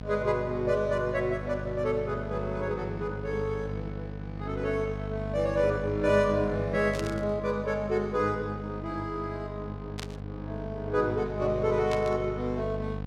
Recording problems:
electrical hum; 50 Hz, harmonics up to 1.3 kHz, SNR 8 dB
static burst; at 7 s, at 10 s and at 12 s; peak -5 dB vs average level

